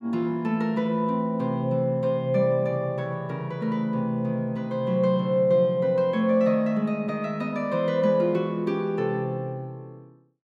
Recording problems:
none

